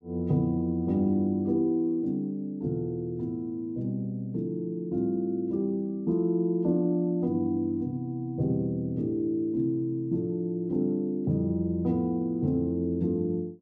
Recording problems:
none

